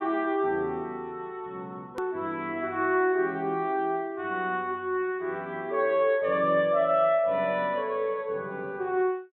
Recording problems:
treble missing; nothing above 3.9 kHz
click at an edit; at 2 s

